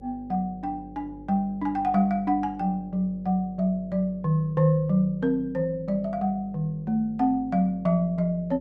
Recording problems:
hum; 50 Hz, harmonics up to 550 Hz, SNR 22 dB

